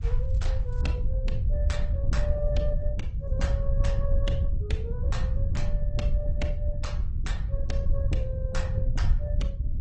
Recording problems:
codec artefacts; MP3, then Opus, log-spectral distance 2 dB, nothing above 8.2 kHz
rumble; below 78 Hz, SNR -8 dB

